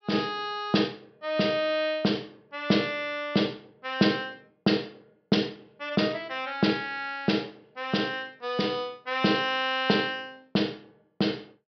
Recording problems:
treble cut off; nothing above 5.5 kHz

